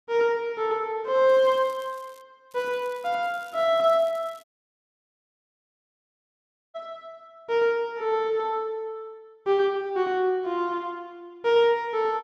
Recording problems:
crackle; at 1.5 s, at 2.5 s and from 3 to 4.5 s; loose cable, SNR 29 dB
audio cutting out; at 4.5 s for 2.5 s

